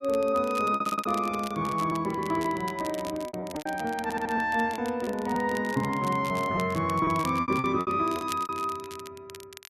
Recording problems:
crackle; vinyl, SNR 17 dB
lost packets; 12% of the sound replaced, filled with repeated pitch periods
audio stuttering; at 1 s and at 4 s

